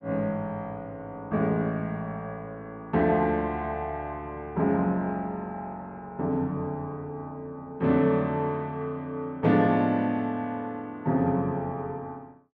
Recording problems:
none

